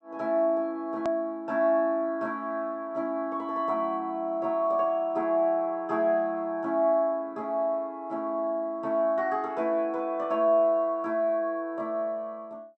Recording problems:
low-pass filter; nothing above 8 kHz
edit click; at 1 s

